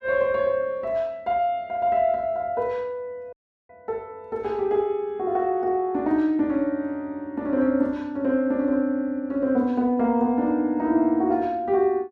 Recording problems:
audio cutting out; at 3.5 s

